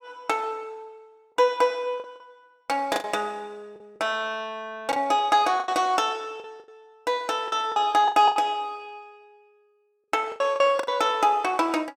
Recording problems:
lost packets; 9% of the sound replaced, filled with the last packet

